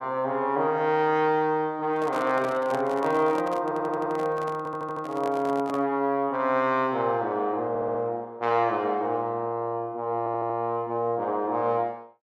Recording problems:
microphone handling noise; from 2 to 6 s; peak -5 dB vs average level
audio stuttering; 4 times, first at 3.5 s

